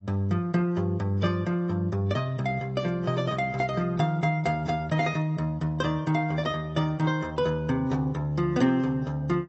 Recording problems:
lossy codec; AAC, log-spectral distance 2 dB, nothing above 7.8 kHz

